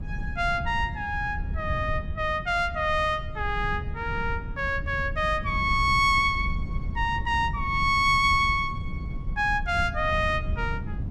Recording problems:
rumble; below 110 Hz, SNR 8 dB

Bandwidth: 16 kHz